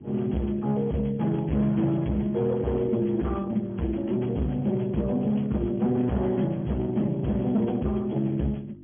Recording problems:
low-pass filter; nothing above 3.4 kHz
lossy compression; Speex, log-spectral distance 5 dB
distorted audio; hard clipping, signal-to-distortion ratio 6 dB
electrical hum; 50 Hz, harmonics up to 450 Hz, SNR 20 dB

